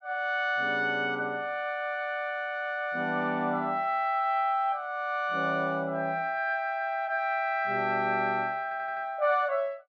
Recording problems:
audio stuttering; at 8.5 s

